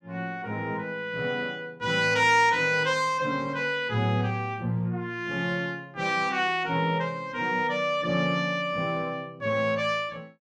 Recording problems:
none

